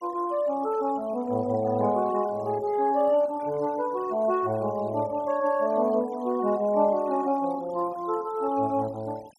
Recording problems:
noise reduction artefacts; signal-to-artefact ratio 23 dB

